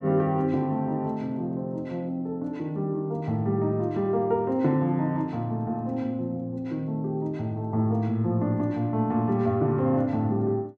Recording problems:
none

